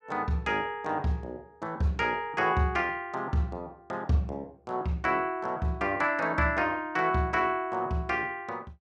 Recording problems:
none

